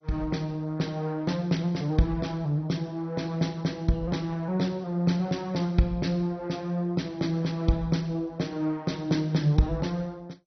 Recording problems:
lossy compression; MP2, log-spectral distance 2 dB, nothing above 6 kHz

